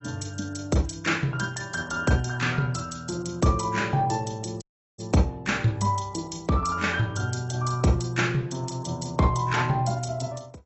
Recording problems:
lossy codec; AAC, log-spectral distance 5 dB, nothing above 8 kHz
audio cutting out; at 4.5 s

